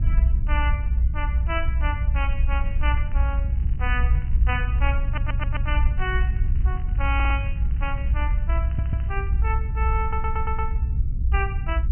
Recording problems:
treble cut off; nothing above 3 kHz
low-frequency rumble; below 64 Hz, SNR -6 dB
crackle; at 2.5 s, from 3.5 to 5 s and from 6 to 9.5 s; loose cable, SNR 23 dB
audio stuttering; 4 times, first at 5 s

